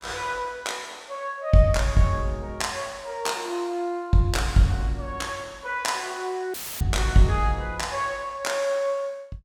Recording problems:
audio cutting out; at 6.5 s; filled with static

